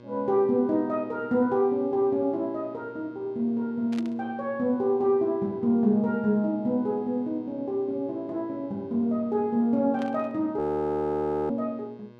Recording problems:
hum; 60 Hz, harmonics up to 3.2 kHz, SNR 24 dB
static burst; at 4 s and at 10 s; peak -11 dB vs average level
audio freezing; at 11 s for 1 s

